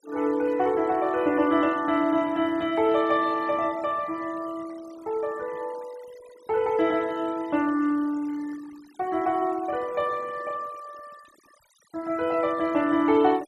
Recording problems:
noise reduction artefacts; signal-to-artefact ratio 23 dB

